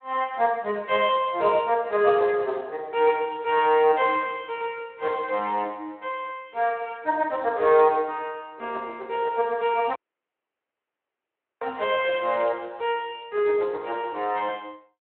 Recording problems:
phone line; 280 Hz to 3.1 kHz, Speex
dropout; at 10 s for 1.5 s
crackling; at 12 s; loose cable, SNR 27 dB

